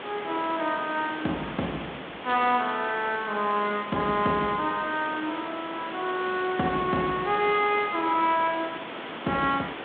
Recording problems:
phone line; 170 Hz to 3.9 kHz, G.726
hiss; SNR 10 dB

